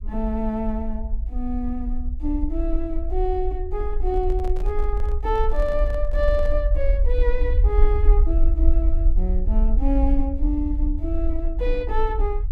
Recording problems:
rumble; below 50 Hz, SNR -3 dB
microphone handling noise; from 4 to 6.5 s; peak -9 dB vs average level

